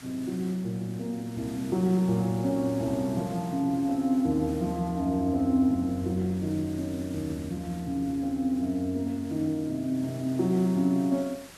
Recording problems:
background hiss; slope -2 dB per octave, SNR 21 dB

